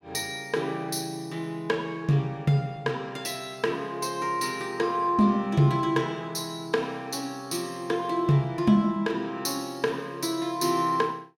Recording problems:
none

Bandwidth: 16.5 kHz